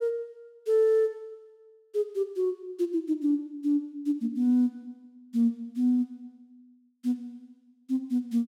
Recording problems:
none

